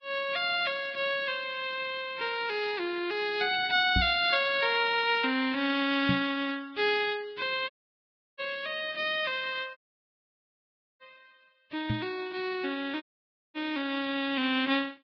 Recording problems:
lossy codec; Vorbis, log-spectral distance 4 dB
microphone bump; at 4 s, at 6 s and at 12 s; peak +3 dB vs average level
audio cutting out; at 7.5 s for 0.5 s, at 10 s for 1 s and at 13 s for 0.5 s

